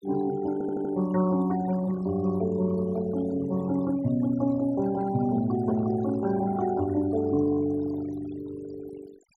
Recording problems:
noise reduction artefacts; signal-to-artefact ratio 18 dB
stutter; at 0.5 s

